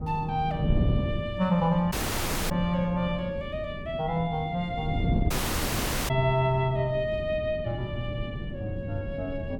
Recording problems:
wind on the microphone; below 210 Hz, SNR 5 dB
audio cutting out; at 2 s for 0.5 s and at 5.5 s for 1 s

